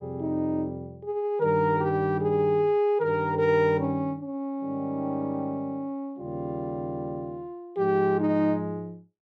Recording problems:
none

